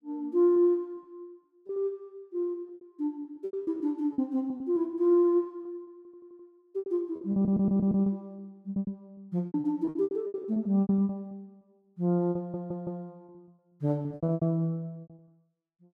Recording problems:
lost packets; 17% of the sound replaced, filled with repeated pitch periods
audio stuttering; at 6 s, at 7.5 s and at 12 s

